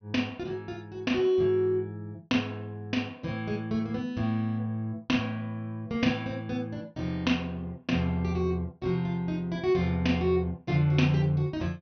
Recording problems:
treble cut off; nothing above 6.1 kHz

